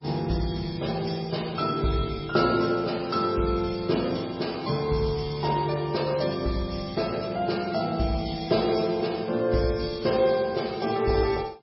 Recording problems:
codec artefacts; MP3, log-spectral distance 6 dB, nothing above 5.5 kHz

